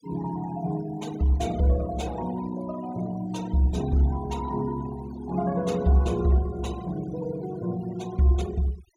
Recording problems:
denoising artefacts; signal-to-artefact ratio 20 dB

